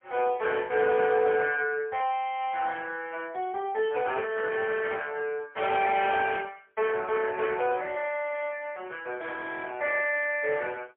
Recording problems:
phone line; 340 Hz to 3.3 kHz, AMR-NB, then MP3

